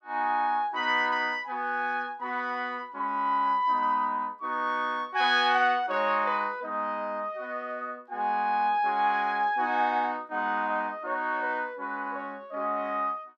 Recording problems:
none

